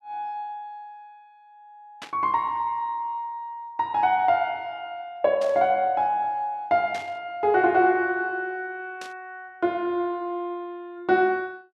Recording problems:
burst of static; 4 times, first at 2 s; peak -9 dB vs average level

